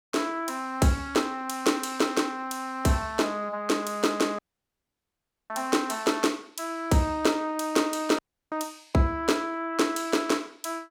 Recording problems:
audio cutting out; at 4.5 s for 1 s and at 8 s

